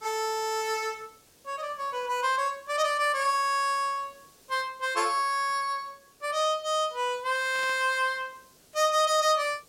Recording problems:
hiss; SNR 30 dB
burst of static; at 7.5 s; peak -13 dB vs average level

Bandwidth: 16.5 kHz